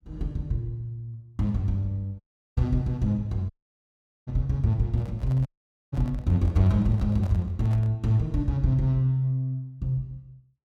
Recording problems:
audio cutting out; at 2 s, at 3.5 s for 1 s and at 5.5 s
handling noise; from 5 to 8 s; peak -11 dB vs average level

